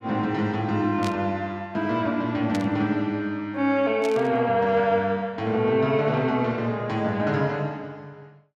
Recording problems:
static burst; at 1 s, at 2.5 s and at 4 s; peak -6 dB vs average level

